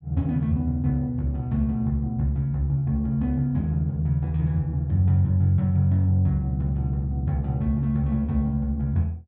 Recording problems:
none

